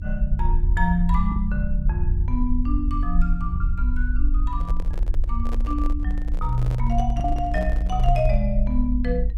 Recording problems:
hum; 60 Hz, harmonics up to 300 Hz, SNR 23 dB
low-frequency rumble; below 52 Hz, SNR -2 dB
packet loss; 1.7% of the sound replaced, filled with the last packet
microphone handling noise; from 4.5 to 8.5 s; peak -5 dB vs average level

